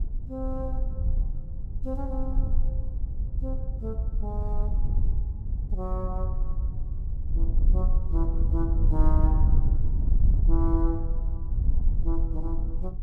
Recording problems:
wind noise; below 62 Hz, SNR -8 dB

